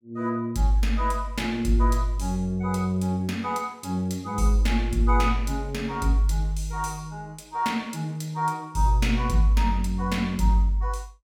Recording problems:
none

